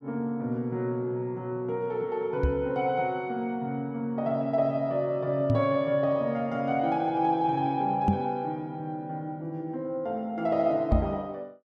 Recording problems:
microphone bump; 4 times, first at 2.5 s; peak +7 dB vs average level

